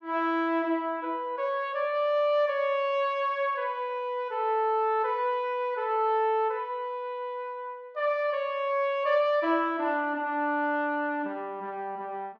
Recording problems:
none

